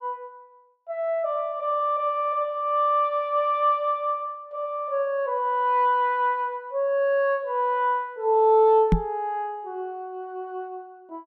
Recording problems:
knock on the microphone; at 9 s; peak +7 dB vs average level

